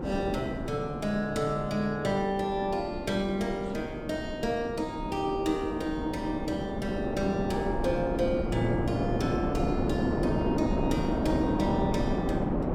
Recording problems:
wind noise; below 480 Hz, SNR 1 dB

